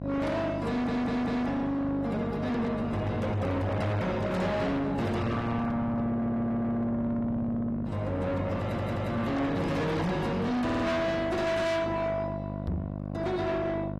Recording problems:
codec artefacts; AAC, log-spectral distance 2 dB
distortion; soft clipping, signal-to-distortion ratio 6 dB
electrical hum; 50 Hz, harmonics up to 1.2 kHz, SNR 6 dB
audio stuttering; 4 times, first at 0.5 s
knock on the microphone; at 13 s; peak +1 dB vs average level

